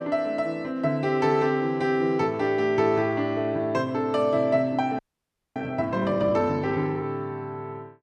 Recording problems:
audio freezing; at 5 s for 0.5 s

